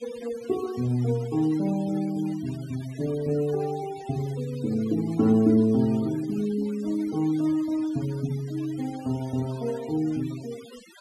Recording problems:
denoising artefacts; signal-to-artefact ratio 20 dB

